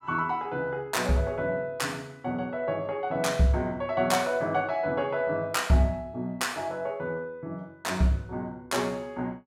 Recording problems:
none

